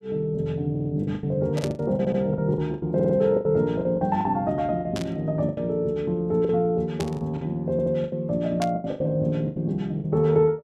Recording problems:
lost packets; 12% of the sound replaced, filled with the last packet
stutter; 4 times, first at 0.5 s
static burst; 4 times, first at 1.5 s; peak -4 dB vs average level

